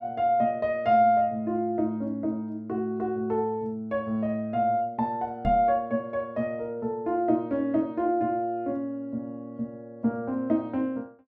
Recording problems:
microphone thump; at 5.5 s; peak -1 dB vs average level

